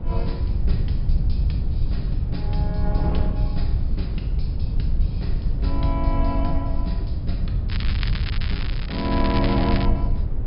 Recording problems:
low-pass filter; nothing above 5.5 kHz
background hiss; SNR 27 dB
rumble; below 84 Hz, SNR -4 dB
wind on the microphone; below 250 Hz, SNR 8 dB
crackling; from 7.5 to 10 s; loose cable, SNR 4 dB

